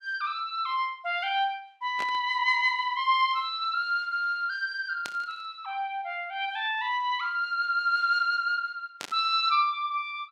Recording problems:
static burst; at 2 s, at 5 s and at 9 s; peak -5 dB vs average level

